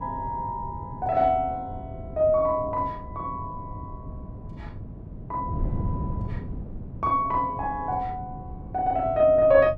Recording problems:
wind noise; below 180 Hz, SNR 11 dB

